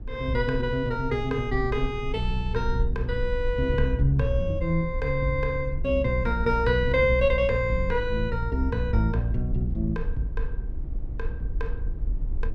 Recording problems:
rumble; below 54 Hz, SNR 8 dB

